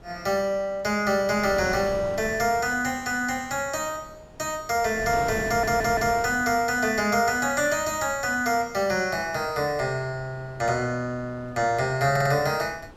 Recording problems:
wind on the microphone; below 680 Hz, SNR 17 dB
stutter; at 5.5 s and at 12 s

